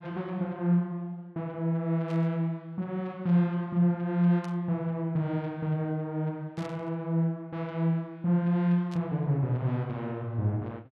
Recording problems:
burst of static; 4 times, first at 2 s; peak -15 dB vs average level

